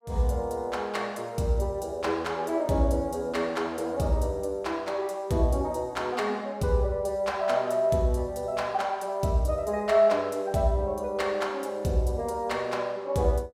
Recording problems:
none

